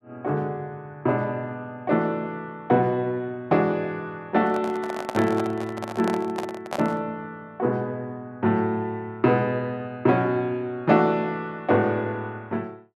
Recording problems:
microphone handling noise; from 4.5 to 7 s; peak -1 dB vs average level

